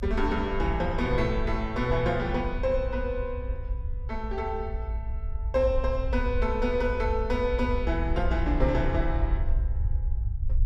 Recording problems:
low-frequency rumble; below 66 Hz, SNR 3 dB

